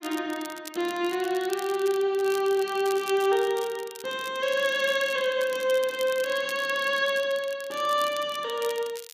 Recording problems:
crackling; vinyl, SNR 16 dB

